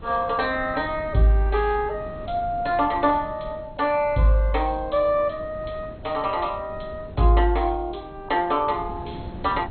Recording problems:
lossy compression; MP2, log-spectral distance 4 dB, nothing above 4.2 kHz
wind on the microphone; below 260 Hz, SNR 17 dB

